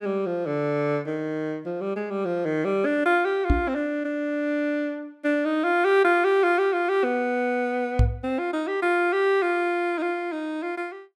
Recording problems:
microphone bump; at 3.5 s and at 8 s; peak +7 dB vs average level

